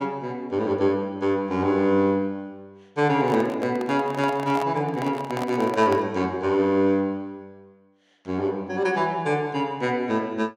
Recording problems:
handling noise; from 3 to 6 s; peak -4 dB vs average level

